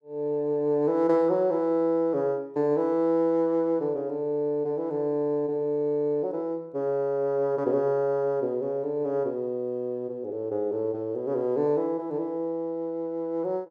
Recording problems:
none

